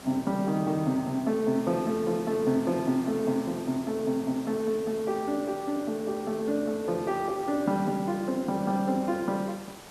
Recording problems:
background hiss; slope -4 dB per octave, SNR 17 dB

